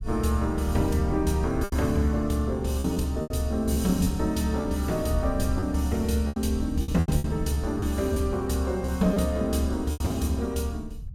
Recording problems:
low-frequency rumble; below 88 Hz, SNR 12 dB
packet loss; 7% of the sound replaced, filled with repeated pitch periods

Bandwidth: 16.5 kHz